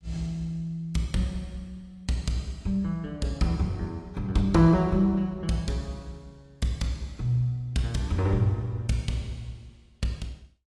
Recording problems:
lossy compression; AAC, log-spectral distance 2 dB

